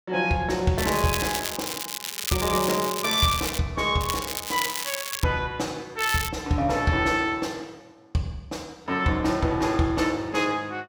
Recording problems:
crackling; from 1 to 3.5 s, from 4 to 5 s and at 6 s; loose cable, SNR 5 dB

